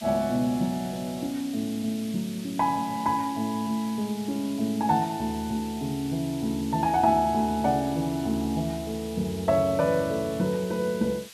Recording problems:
hiss; SNR 16 dB

